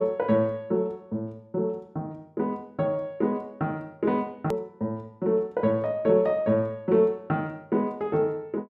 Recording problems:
click at an edit; at 4.5 s

